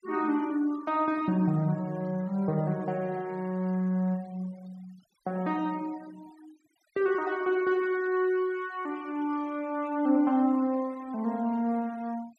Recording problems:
denoising artefacts; signal-to-artefact ratio 23 dB

